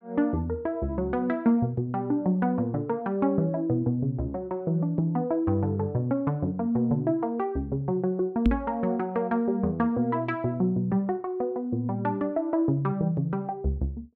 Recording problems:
microphone thump; at 8.5 s; peak +7 dB vs average level

